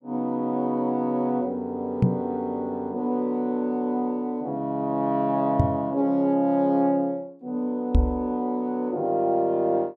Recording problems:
knock on the microphone; at 2 s, at 5.5 s and at 8 s; peak +9 dB vs average level

